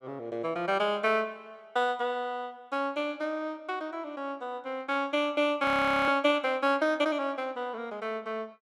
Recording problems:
audio freezing; at 5.5 s

